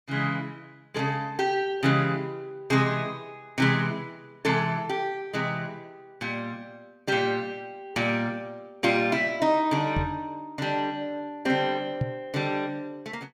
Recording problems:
microphone thump; at 10 s and at 12 s; peak +3 dB vs average level

